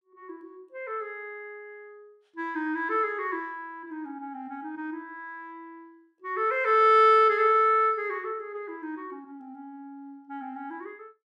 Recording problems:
none

